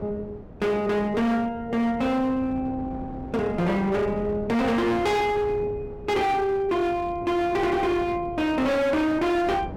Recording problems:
distortion; hard clipping, signal-to-distortion ratio 7 dB
wind on the microphone; below 410 Hz, SNR 15 dB

